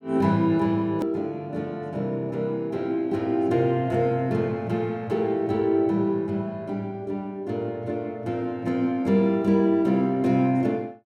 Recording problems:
hard cut with a click; at 1 s

